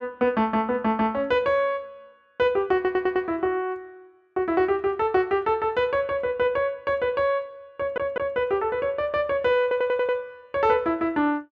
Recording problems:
stutter; at 3 s, at 8 s and at 9.5 s

